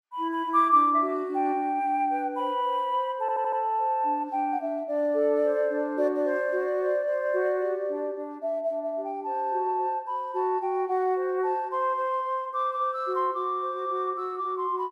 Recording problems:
audio stuttering; at 3 s

